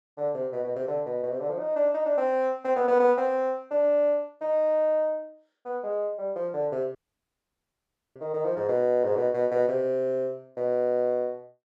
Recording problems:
dropout; at 7 s for 1 s

